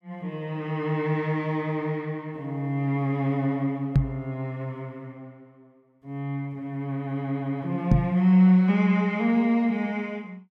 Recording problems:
knock on the microphone; at 4 s and at 8 s; peak +9 dB vs average level

